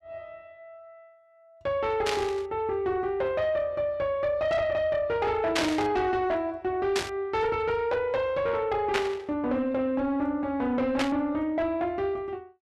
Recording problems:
distortion; soft clipping, signal-to-distortion ratio 12 dB
burst of static; 5 times, first at 2 s; peak +4 dB vs average level

